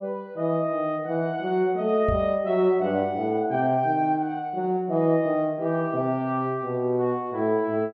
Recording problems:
knock on the microphone; at 2 s; peak -1 dB vs average level

